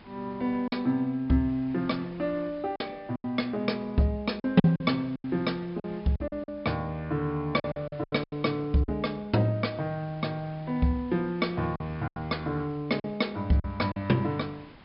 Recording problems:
treble cut off; nothing above 5.2 kHz
codec artefacts; G.722, log-spectral distance 2 dB
hiss; SNR 23 dB
packet loss; 7% of the sound replaced, filled with silence

